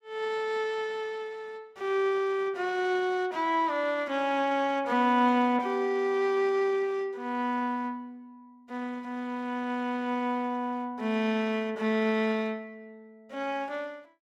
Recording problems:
none

